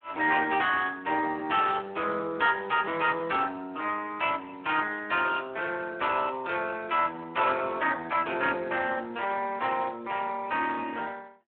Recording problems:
phone line; 280 Hz to 3.5 kHz, Speex

